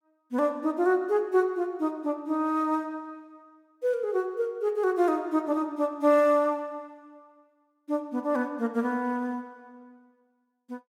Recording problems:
none

